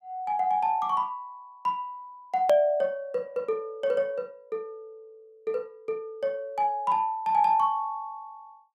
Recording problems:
edit click; at 2.5 s

